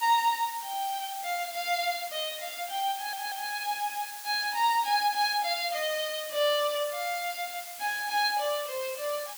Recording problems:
hiss; slope +3 dB per octave, SNR 10 dB
audio stuttering; at 3 s

